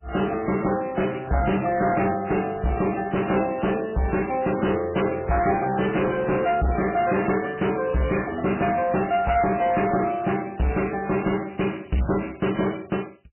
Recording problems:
lossy compression; MP3, log-spectral distance 11 dB, nothing above 2.8 kHz
distorted audio; hard clipping, signal-to-distortion ratio 7 dB

